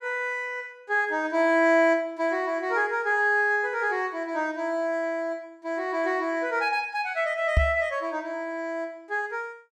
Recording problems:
knock on the microphone; at 7.5 s; peak +7 dB vs average level

